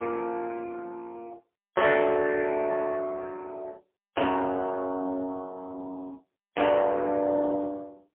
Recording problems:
telephone audio; 240 Hz to 2.8 kHz, AMR-NB, then MP3

